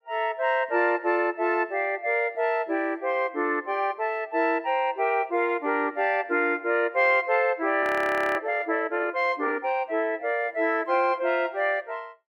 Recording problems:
frozen audio; at 8 s for 0.5 s

